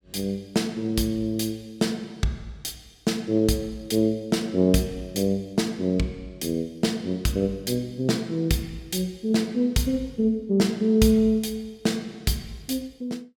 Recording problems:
none

